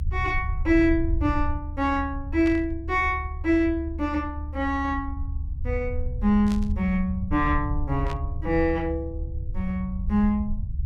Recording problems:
rumble; below 76 Hz, SNR 6 dB
static burst; at 2.5 s, at 6.5 s and at 8 s; peak -10 dB vs average level

